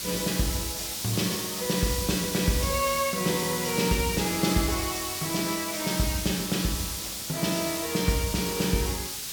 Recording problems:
hiss; SNR 3 dB

